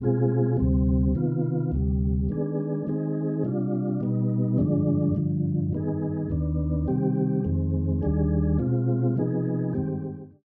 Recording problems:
none

